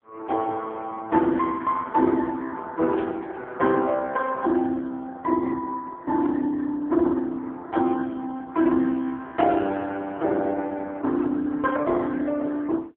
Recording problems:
telephone audio; 220 Hz to 3.2 kHz, AMR-NB
burst of static; at 3 s; peak -14 dB vs average level

